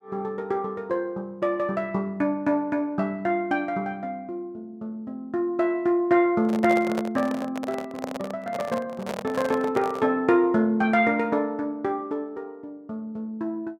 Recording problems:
microphone handling noise; from 6.5 to 10 s; peak -1 dB vs average level

